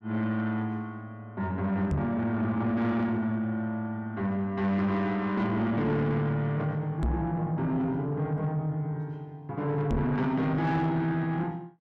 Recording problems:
distortion; soft clipping, signal-to-distortion ratio 11 dB
microphone bump; at 2 s, at 7 s and at 10 s; peak +4 dB vs average level

